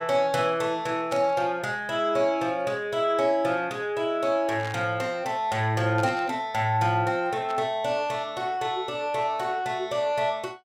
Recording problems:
static burst; 4 times, first at 1 s; peak -10 dB vs average level

